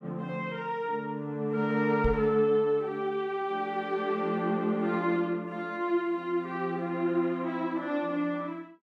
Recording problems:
microphone thump; at 2 s; peak +2 dB vs average level

